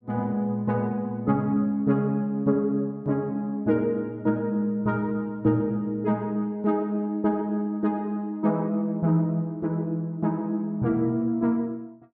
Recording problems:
none

